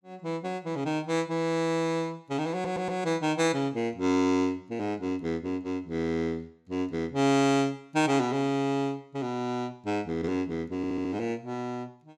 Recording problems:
stutter; at 2.5 s and at 11 s

